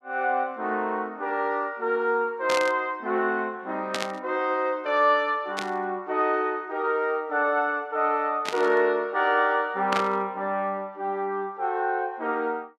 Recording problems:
burst of static; 5 times, first at 2.5 s; peak +1 dB vs average level

